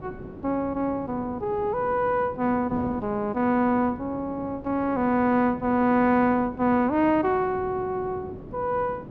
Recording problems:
wind noise; below 400 Hz, SNR 15 dB

